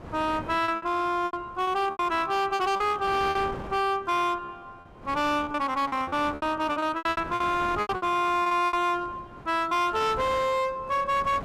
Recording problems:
distortion; hard clipping, uneven, signal-to-distortion ratio 9 dB
wind on the microphone; below 930 Hz, SNR 17 dB
lost packets; 13% of the sound replaced, filled with repeated pitch periods

